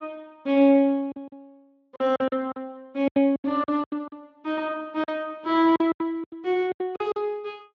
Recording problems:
lossy codec; Speex, log-spectral distance 2 dB
packet loss; 15% of the sound replaced, filled with silence

